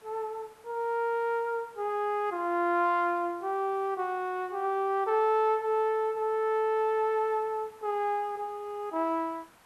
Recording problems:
hiss; SNR 28 dB

